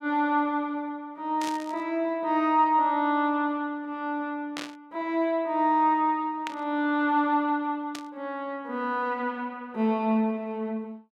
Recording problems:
static burst; 4 times, first at 1.5 s; peak -4 dB vs average level

